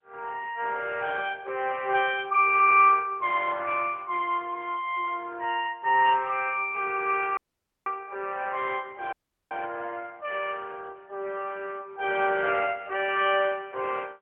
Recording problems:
telephone audio; 300 Hz to 3.4 kHz, AMR-NB, then MP3
audio cutting out; at 7.5 s and at 9 s

